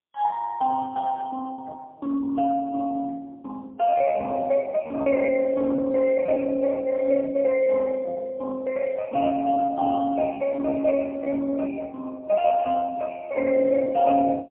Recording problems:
phone line; 260 Hz to 2.5 kHz, AMR-NB, then MP3
lost packets; 4% of the sound replaced, filled with repeated pitch periods

